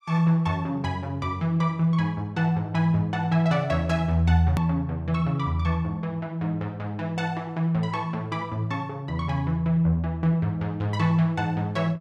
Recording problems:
hard cut with a click; at 4.5 s

